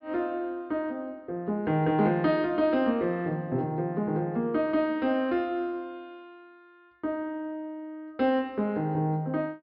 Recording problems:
treble missing; nothing above 5.5 kHz

